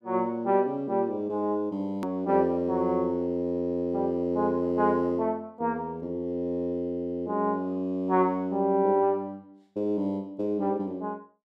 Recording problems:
click at an edit; at 2 s

